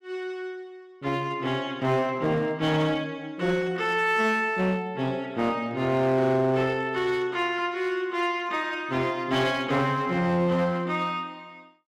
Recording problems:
distortion; hard clipping, uneven, signal-to-distortion ratio 11 dB

